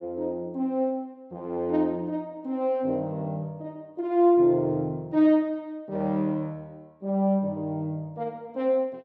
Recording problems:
none

